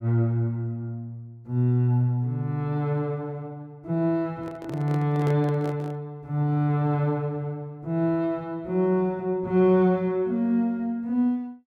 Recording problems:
handling noise; from 4.5 to 6 s; peak -5 dB vs average level

